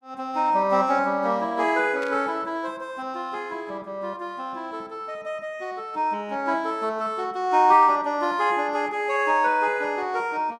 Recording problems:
burst of static; at 2 s; peak -12 dB vs average level

